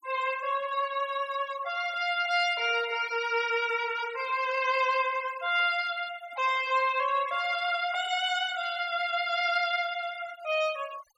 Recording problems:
noise reduction artefacts; signal-to-artefact ratio 17 dB

